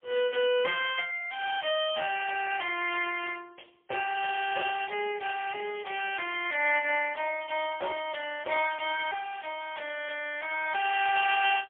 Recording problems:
telephone audio; 320 Hz to 3.3 kHz, AMR-NB, then MP3

